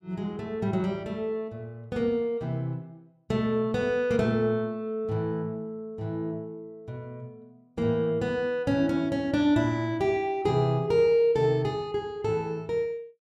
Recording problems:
none

